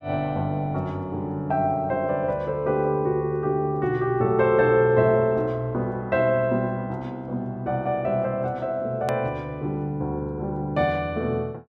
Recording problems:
click at an edit; at 9 s

